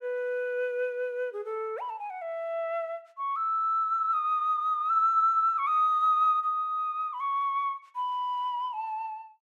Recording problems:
none

